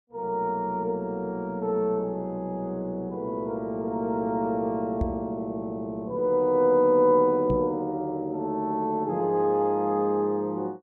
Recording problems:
knock on the microphone; at 5 s and at 7.5 s; peak +1 dB vs average level

